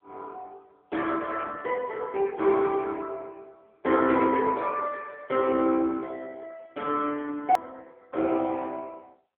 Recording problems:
telephone audio; 280 Hz to 3.3 kHz, AMR-NB
edit click; at 7.5 s

